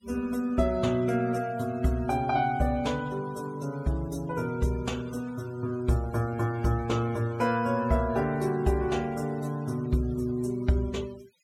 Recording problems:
denoising artefacts; signal-to-artefact ratio 23 dB

